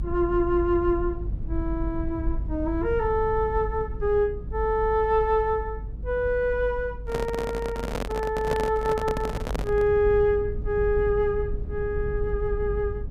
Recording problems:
rumble; below 74 Hz, SNR 8 dB
microphone handling noise; from 7 to 10 s; peak 0 dB vs average level

